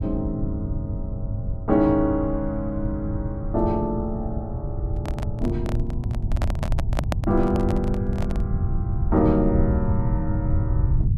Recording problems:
rumble; below 120 Hz, SNR 2 dB
handling noise; from 5 to 8.5 s; peak +3 dB vs average level

